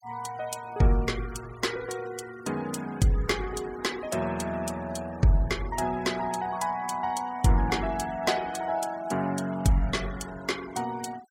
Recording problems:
denoising artefacts; signal-to-artefact ratio 18 dB

